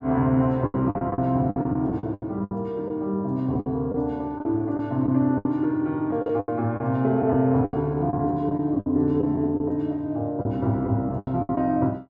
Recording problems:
packet loss; 13% of the sound replaced, filled with the last packet

